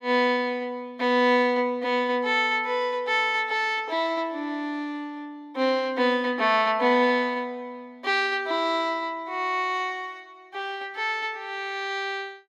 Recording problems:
none

